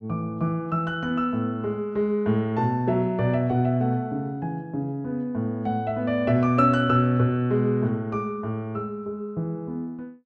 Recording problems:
none

